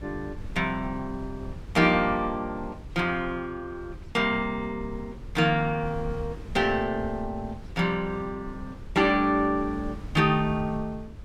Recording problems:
wind noise; below 120 Hz, SNR 15 dB

